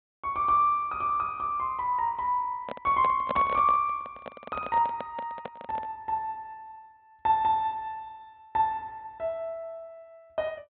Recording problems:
treble cut off; nothing above 4 kHz
microphone handling noise; from 2.5 to 6 s; peak 0 dB vs average level

